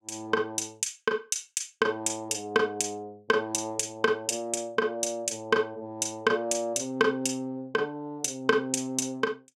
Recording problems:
none

